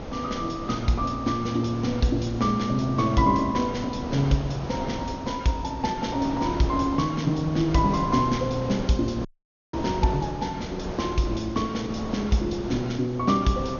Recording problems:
treble missing; nothing above 6.7 kHz
background hiss; slope -6 dB per octave, SNR 19 dB
wind on the microphone; below 670 Hz, SNR 10 dB
dropout; at 9.5 s

